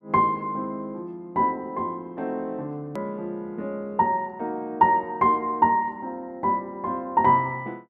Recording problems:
edit click; at 3 s

